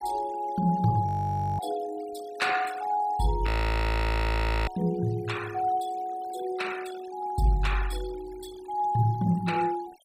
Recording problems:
noise reduction artefacts; signal-to-artefact ratio 18 dB
frozen audio; at 1 s for 0.5 s and at 3.5 s for 1 s

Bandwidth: 15.5 kHz